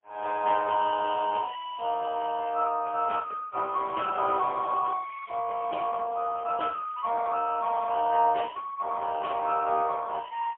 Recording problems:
telephone audio; 340 Hz to 3.3 kHz, AMR-NB, then MP3

